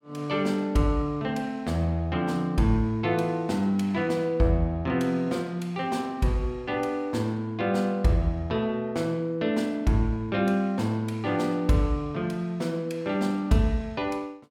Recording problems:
none

